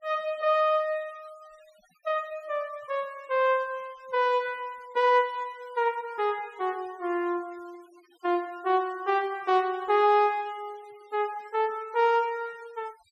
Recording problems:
denoising artefacts; signal-to-artefact ratio 27 dB

